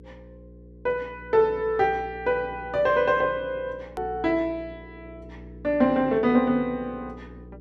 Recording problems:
electrical hum; 60 Hz, harmonics up to 480 Hz, SNR 21 dB
edit click; at 4 s

